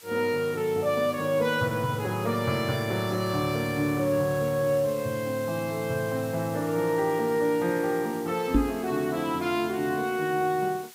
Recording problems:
background hiss; slope +1 dB per octave, SNR 18 dB
knock on the microphone; at 8.5 s; peak +8 dB vs average level

